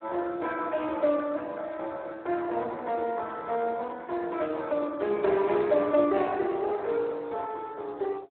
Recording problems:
telephone audio; 260 Hz to 4 kHz, Speex

